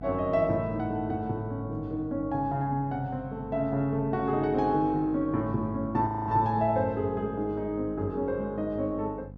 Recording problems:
hum; 50 Hz, harmonics up to 800 Hz, SNR 15 dB
audio freezing; at 6 s

